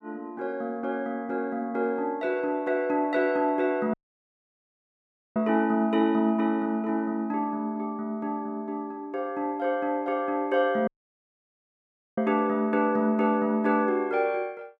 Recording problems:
audio cutting out; at 4 s for 1.5 s and at 11 s for 1.5 s

